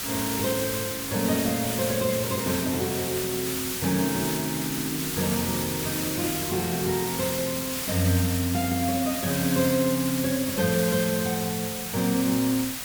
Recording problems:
background hiss; slope +1 dB per octave, SNR 3 dB

